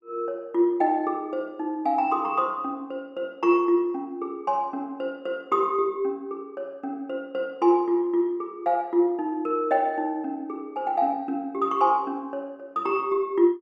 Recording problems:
none

